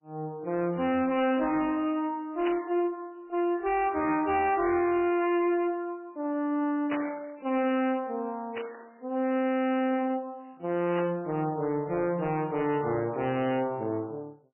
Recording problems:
lossy codec; MP3, log-spectral distance 3 dB, nothing above 2.4 kHz
distorted audio; hard clipping, signal-to-distortion ratio 7 dB
burst of static; 4 times, first at 2.5 s; peak -3 dB vs average level

